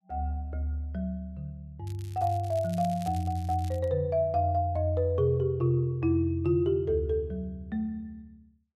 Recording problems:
crackling; from 2 to 4 s; loose cable, SNR 22 dB

